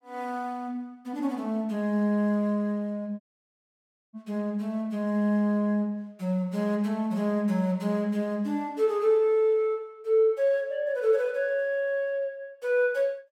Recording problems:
dropout; at 3 s for 1 s

